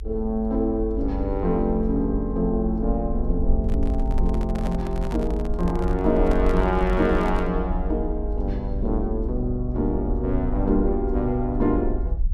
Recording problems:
rumble; below 52 Hz, SNR 4 dB
handling noise; from 3.5 to 7.5 s; peak -5 dB vs average level

